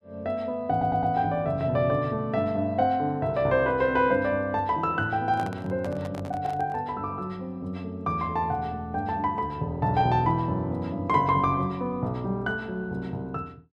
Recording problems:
stutter; at 0.5 s
microphone handling noise; from 5.5 to 7 s; peak -8 dB vs average level

